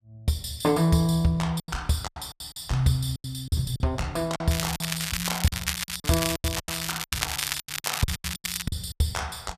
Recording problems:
packet loss; 14% of the sound replaced, filled with silence
crackling; from 4.5 to 8.5 s; loose cable, SNR 2 dB

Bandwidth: 14.5 kHz